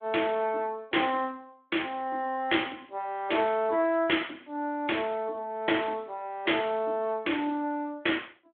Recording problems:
telephone audio; 240 Hz to 3.4 kHz, Speex

